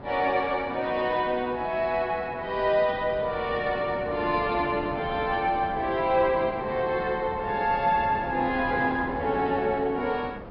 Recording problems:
low-pass filter; nothing above 5.5 kHz
wind on the microphone; below 750 Hz, SNR 12 dB

